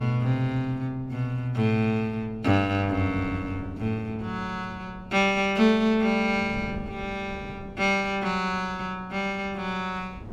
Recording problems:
wind on the microphone; below 260 Hz, SNR 18 dB

